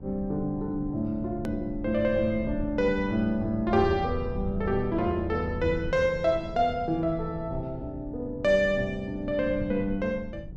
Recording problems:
rumble; below 150 Hz, SNR 12 dB
hard cut with a click; at 1.5 s

